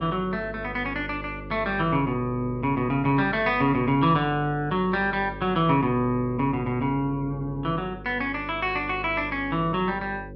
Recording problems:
electrical hum; 50 Hz, harmonics up to 550 Hz, SNR 15 dB

